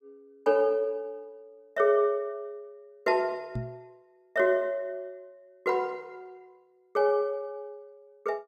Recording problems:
knock on the microphone; at 3.5 s; peak -2 dB vs average level

